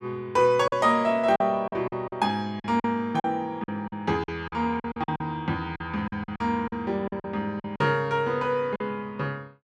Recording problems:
packet loss; 11% of the sound replaced, filled with silence

